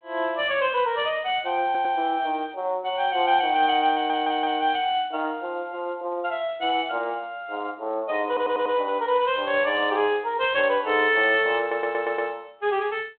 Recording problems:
telephone audio; 260 Hz to 3.5 kHz, G.726
stutter; 4 times, first at 1.5 s

